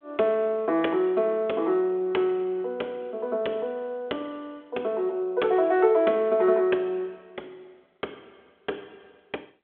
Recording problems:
phone line; 260 Hz to 3.7 kHz, G.726

